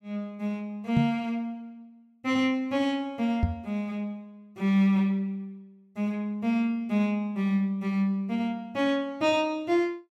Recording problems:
microphone bump; at 1 s and at 3.5 s; peak +6 dB vs average level

